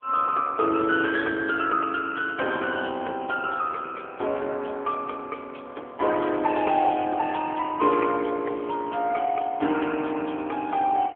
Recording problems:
telephone audio; 280 Hz to 3.3 kHz, AMR-NB

